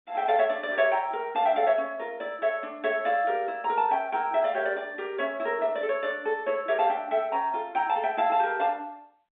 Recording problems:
telephone audio; 220 Hz to 3.7 kHz, G.711

